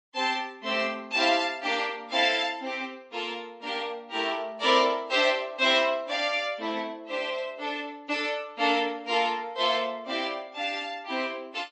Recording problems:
lossy compression; MP3, log-spectral distance 2 dB, nothing above 8 kHz

